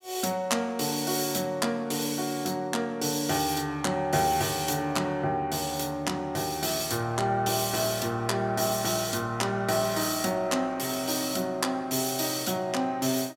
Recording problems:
none

